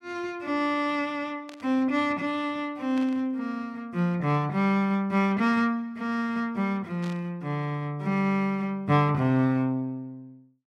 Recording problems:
static burst; at 1.5 s, at 3 s and at 7 s; peak -13 dB vs average level

